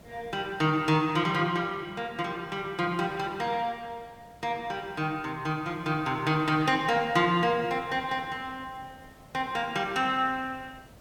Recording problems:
background hiss; SNR 24 dB

